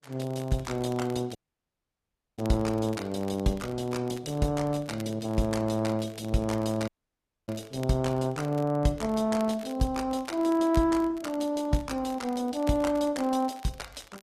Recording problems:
lossy codec; Opus, log-spectral distance 3 dB, nothing above 14.3 kHz
crackle; vinyl, SNR 23 dB
dropout; at 1.5 s for 1 s and at 7 s for 0.5 s

